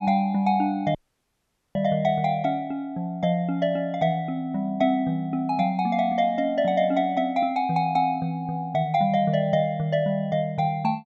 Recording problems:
audio cutting out; at 1 s for 1 s

